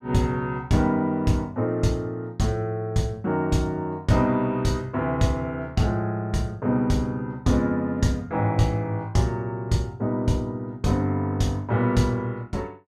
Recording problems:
none

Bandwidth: 14 kHz